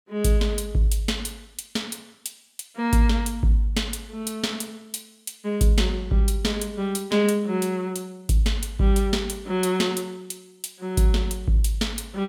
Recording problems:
none

